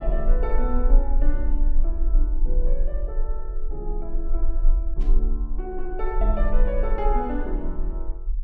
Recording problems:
low-frequency rumble; below 36 Hz, strongest tone 20 Hz, SNR -6 dB
static burst; at 5 s; peak -15 dB vs average level

